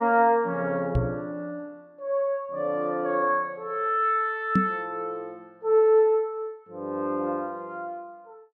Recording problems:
microphone bump; at 1 s and at 4.5 s; peak +6 dB vs average level

